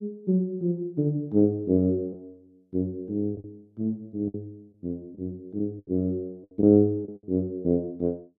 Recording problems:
lost packets; 6% of the sound replaced, filled with the last packet

